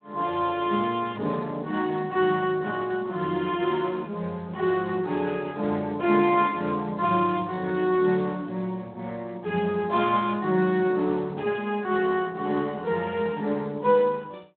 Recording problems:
telephone audio; 150 Hz to 3.7 kHz, Speex

